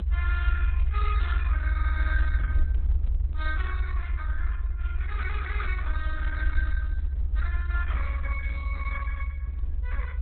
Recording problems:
codec artefacts; Opus, log-spectral distance 3 dB, nothing above 4 kHz
rumble; below 70 Hz, SNR -7 dB

